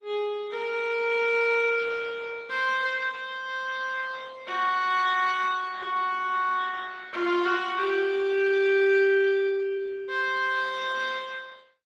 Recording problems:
codec artefacts; Opus, log-spectral distance 4 dB

